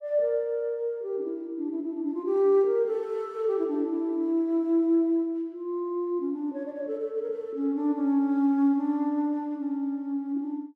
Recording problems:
none

